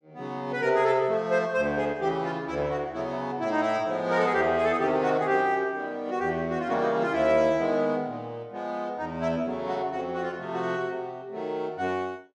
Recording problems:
none

